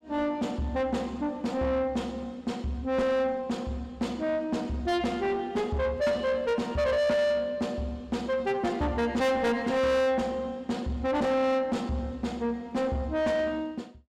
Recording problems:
distortion; soft clipping, signal-to-distortion ratio 7 dB

